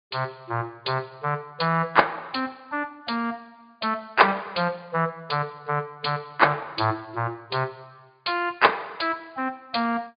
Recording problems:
treble cut off; nothing above 4.8 kHz
lossy codec; Speex, log-spectral distance 4 dB

